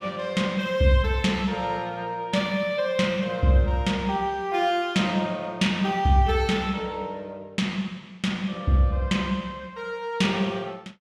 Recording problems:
none

